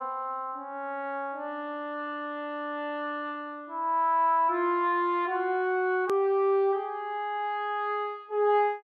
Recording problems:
edit click; at 6 s

